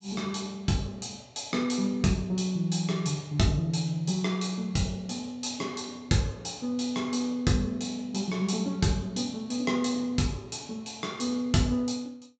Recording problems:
low-pass filter; nothing above 8 kHz

